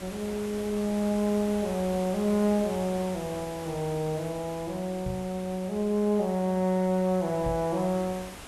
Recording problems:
lossy compression; Vorbis, log-spectral distance 4 dB
background hiss; slope -3 dB per octave, SNR 14 dB
microphone thump; at 5 s and at 7.5 s; peak -3 dB vs average level

